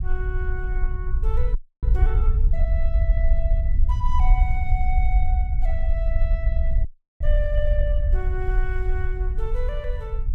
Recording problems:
low-frequency rumble; below 56 Hz, SNR -10 dB
frozen audio; at 1.5 s and at 7 s

